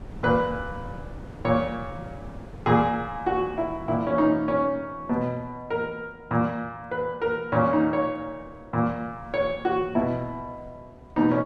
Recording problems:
wind on the microphone; below 290 Hz, SNR 18 dB

